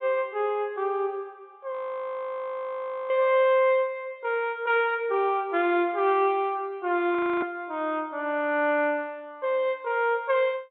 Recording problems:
treble cut off; nothing above 4 kHz
audio freezing; at 1.5 s for 1.5 s and at 7 s

